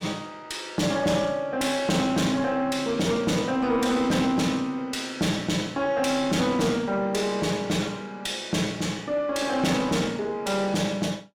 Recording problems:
distorted audio; soft clipping, signal-to-distortion ratio 11 dB

